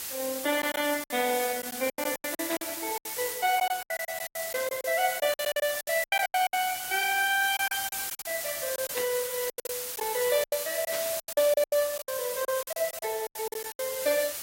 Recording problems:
lossy compression; AAC, log-spectral distance 12 dB
background hiss; slope +1 dB per octave, SNR 5 dB
lost packets; 16% of the sound replaced, filled with silence
burst of static; 5 times, first at 2.5 s; peak -4 dB vs average level

